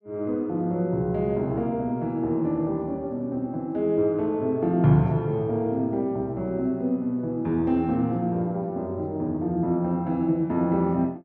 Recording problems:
none

